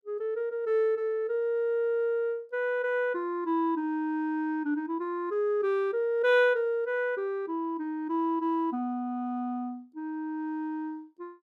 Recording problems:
none

